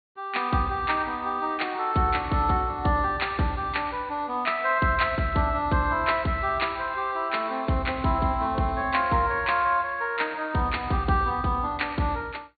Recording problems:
low-pass filter; nothing above 4.4 kHz

